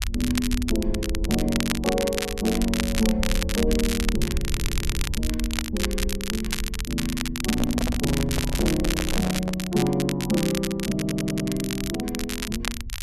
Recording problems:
rumble; below 68 Hz, SNR 6 dB
crackling; vinyl, SNR 4 dB
audio stuttering; at 4.5 s and at 11 s
microphone handling noise; from 7.5 to 9.5 s; peak -1 dB vs average level

